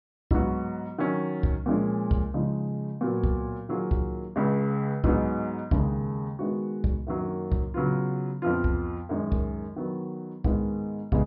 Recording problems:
treble cut off; nothing above 5.5 kHz

